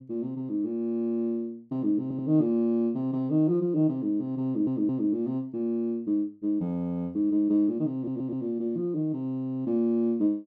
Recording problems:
audio stuttering; at 2 s, at 4.5 s and at 8 s

